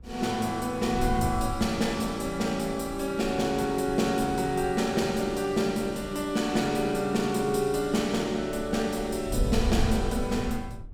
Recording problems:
wind on the microphone; below 94 Hz, SNR 11 dB

